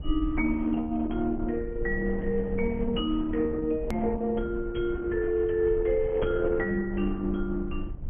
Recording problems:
treble missing; nothing above 2.9 kHz
codec artefacts; Opus, log-spectral distance 3 dB
low-frequency rumble; below 66 Hz, SNR 11 dB
edit click; at 4 s

